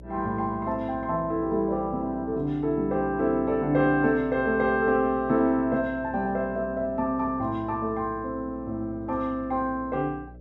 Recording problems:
electrical hum; 60 Hz, harmonics up to 600 Hz, SNR 19 dB

